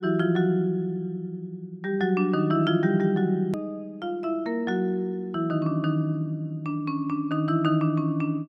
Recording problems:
hard cut with a click; at 3.5 s

